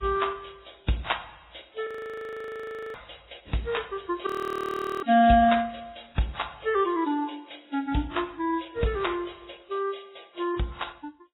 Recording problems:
lossy compression; Vorbis, then AAC, log-spectral distance 8 dB, nothing above 18.3 kHz
frozen audio; at 2 s for 1 s and at 4.5 s for 1 s

